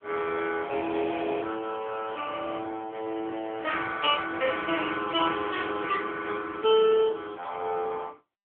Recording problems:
telephone audio; 220 Hz to 3.3 kHz, AMR-NB

